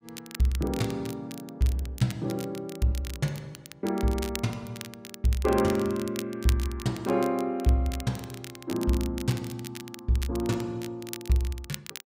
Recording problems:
crackle; vinyl, SNR 14 dB

